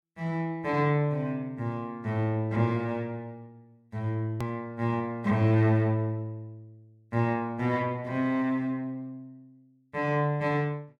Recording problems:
hard cut with a click; at 4.5 s

